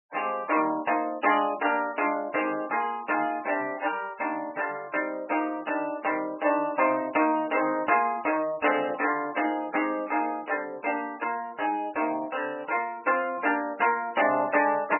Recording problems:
codec artefacts; MP3, log-spectral distance 5 dB, nothing above 2.9 kHz

